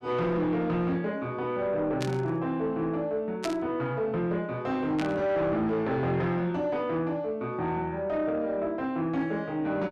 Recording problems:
distortion; soft clipping, signal-to-distortion ratio 11 dB
burst of static; at 2 s, at 3.5 s and at 5 s; peak -1 dB vs average level

